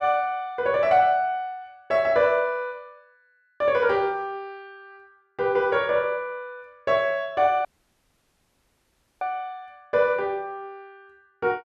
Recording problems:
dropout; at 7.5 s for 1.5 s

